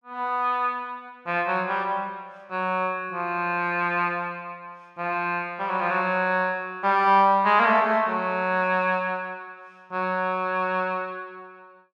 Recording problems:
none

